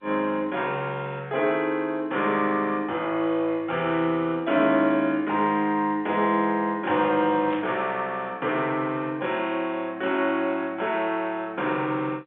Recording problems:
telephone audio; 220 Hz to 3.5 kHz, G.711
burst of static; at 7.5 s; peak -10 dB vs average level

